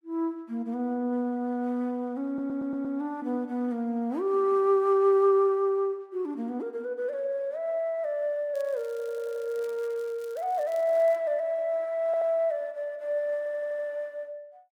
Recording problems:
audio stuttering; 4 times, first at 2.5 s
crackle; from 8.5 to 11 s; loose cable, SNR 27 dB

